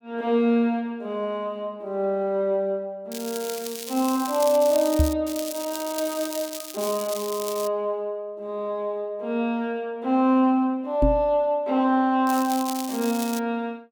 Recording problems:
crackle; from 3 to 5 s, from 5.5 to 7.5 s and from 12 to 13 s; loose cable, SNR 10 dB
microphone bump; at 5 s and at 11 s; peak +6 dB vs average level

